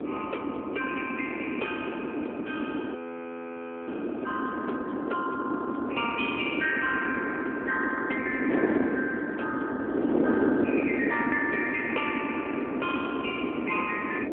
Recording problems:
phone line; 260 Hz to 3.3 kHz, AMR-NB
wind on the microphone; below 460 Hz, SNR -1 dB
audio freezing; at 3 s for 1 s

